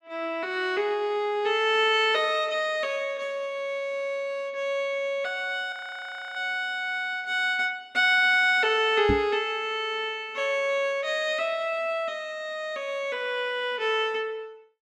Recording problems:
frozen audio; at 5.5 s for 0.5 s
microphone thump; at 9 s; peak +3 dB vs average level

